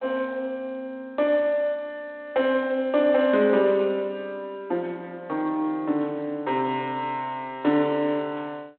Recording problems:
telephone audio; 220 Hz to 4 kHz, G.726

